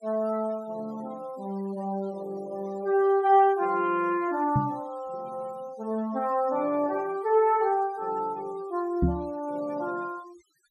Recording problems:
denoising artefacts; signal-to-artefact ratio 25 dB
knock on the microphone; at 4.5 s and at 9 s; peak +6 dB vs average level

